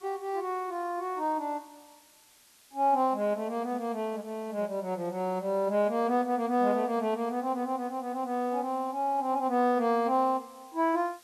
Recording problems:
background hiss; slope +1 dB per octave, SNR 27 dB

